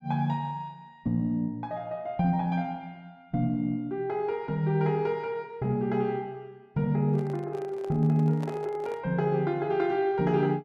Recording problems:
microphone handling noise; from 7 to 9 s; peak -9 dB vs average level

